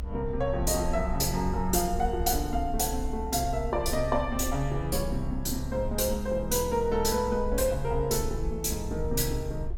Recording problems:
rumble; below 62 Hz, strongest tone 20 Hz, SNR 8 dB

